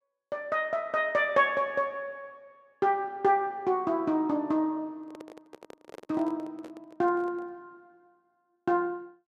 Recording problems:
microphone handling noise; from 5 to 7.5 s; peak -13 dB vs average level

